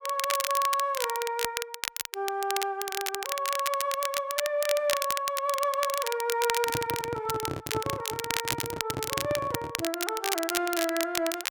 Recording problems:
crackling; vinyl, SNR 3 dB
microphone handling noise; from 6.5 to 10 s; peak +1 dB vs average level

